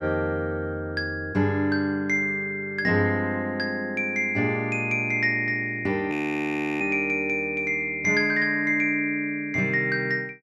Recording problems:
audio freezing; at 6 s for 0.5 s

